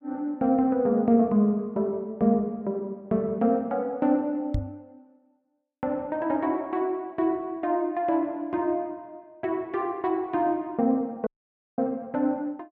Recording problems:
knock on the microphone; at 4.5 s; peak +2 dB vs average level
audio cutting out; at 11 s for 0.5 s

